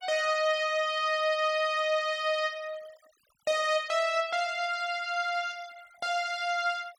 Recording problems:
noise reduction artefacts; signal-to-artefact ratio 25 dB

